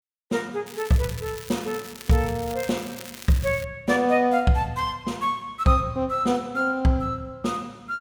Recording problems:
crackle; from 0.5 to 3.5 s; loose cable, SNR 15 dB

